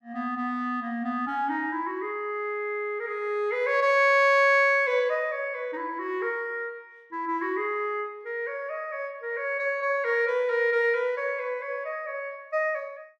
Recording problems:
none

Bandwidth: 14 kHz